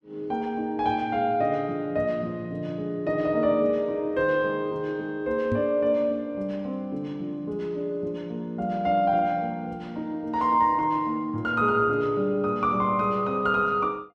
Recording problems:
microphone bump; at 5.5 s; peak 0 dB vs average level

